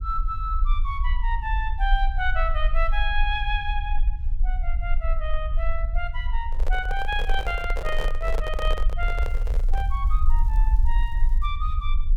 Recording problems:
low-frequency rumble; below 44 Hz, strongest tone 20 Hz, SNR -3 dB
handling noise; from 6.5 to 10 s; peak +1 dB vs average level
crackling; at 7 s and from 9 to 11 s; loose cable, SNR 30 dB

